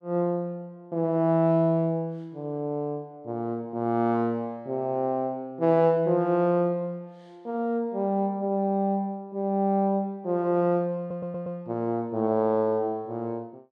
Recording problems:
audio stuttering; at 11 s

